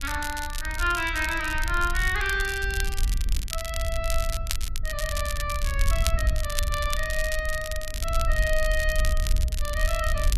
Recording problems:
wind noise; below 62 Hz, SNR 2 dB
crackle; vinyl, SNR 7 dB

